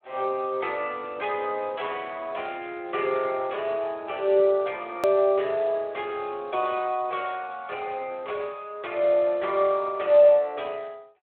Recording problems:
telephone audio; 300 Hz to 3.6 kHz, Speex
hard cut with a click; at 5 s

